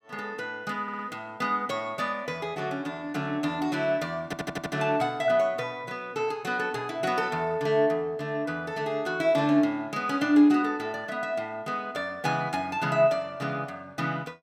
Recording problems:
stutter; at 1 s and at 4.5 s

